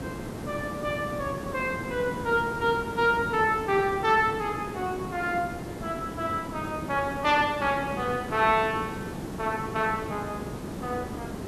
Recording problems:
background hiss; slope -8 dB per octave, SNR 9 dB

